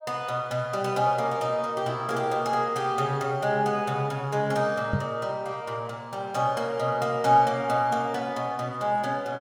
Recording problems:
microphone thump; at 5 s; peak +3 dB vs average level

